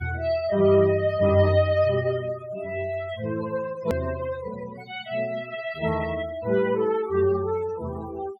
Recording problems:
noise reduction artefacts; signal-to-artefact ratio 18 dB
edit click; at 4 s

